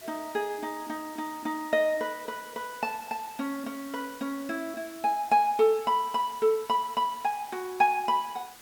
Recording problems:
hiss; slope 0 dB per octave, SNR 18 dB

